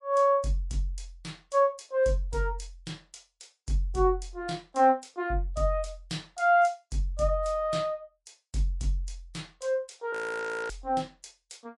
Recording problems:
lossy compression; MP3, log-spectral distance 2 dB
frozen audio; at 10 s for 0.5 s

